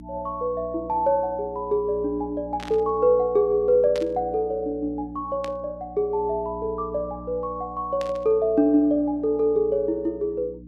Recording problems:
electrical hum; 60 Hz, harmonics up to 300 Hz, SNR 18 dB
static burst; 4 times, first at 2.5 s; peak -9 dB vs average level

